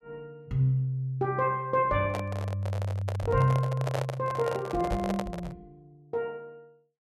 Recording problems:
microphone handling noise; from 2 to 5.5 s; peak +2 dB vs average level

